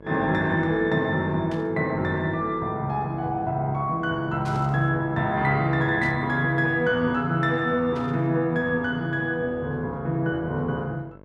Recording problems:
hum; 50 Hz, harmonics up to 1.7 kHz, SNR 23 dB
static burst; 4 times, first at 1.5 s; peak -15 dB vs average level

